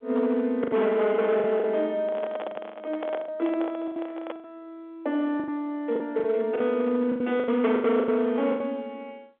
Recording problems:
telephone audio; 220 Hz to 3.6 kHz, G.711
distortion; hard clipping, uneven, signal-to-distortion ratio 11 dB
lost packets; 12% of the sound replaced, filled with the last packet
handling noise; from 2 to 4.5 s; peak -3 dB vs average level

